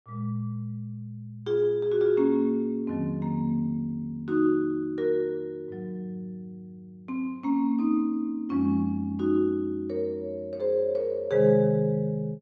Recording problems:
none

